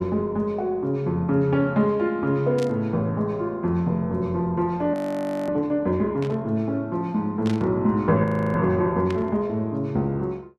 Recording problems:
burst of static; 4 times, first at 2.5 s; peak -8 dB vs average level
frozen audio; at 5 s for 0.5 s and at 8 s

